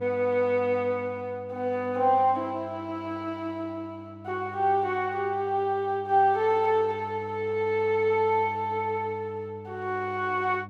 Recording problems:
hum; 50 Hz, harmonics up to 700 Hz, SNR 18 dB

